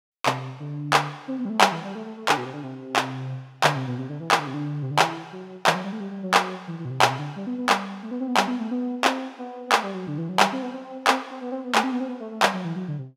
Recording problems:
none

